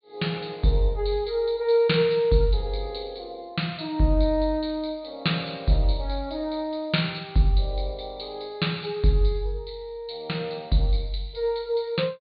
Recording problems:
low-pass filter; nothing above 4.6 kHz

